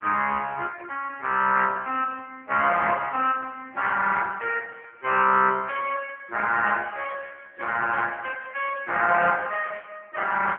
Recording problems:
phone line; 240 Hz to 3.1 kHz, AMR-NB

